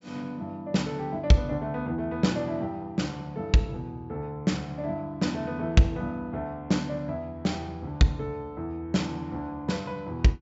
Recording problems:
treble cut off; nothing above 8 kHz

